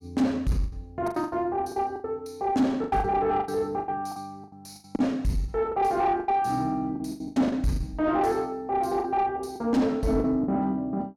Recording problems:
distortion; soft clipping, signal-to-distortion ratio 10 dB
packet loss; 13% of the sound replaced, filled with the last packet

